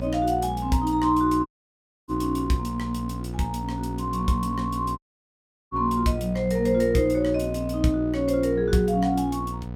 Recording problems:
hum; 60 Hz, harmonics up to 960 Hz, SNR 8 dB
audio cutting out; at 1.5 s for 0.5 s and at 5 s for 0.5 s

